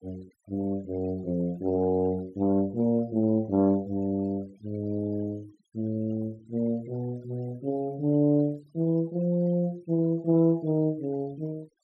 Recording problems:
denoising artefacts; signal-to-artefact ratio 28 dB

